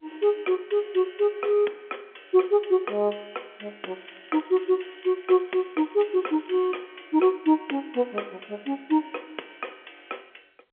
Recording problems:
phone line; 280 Hz to 3.4 kHz, G.711
crackle; from 4 to 7 s; loose cable, SNR 28 dB

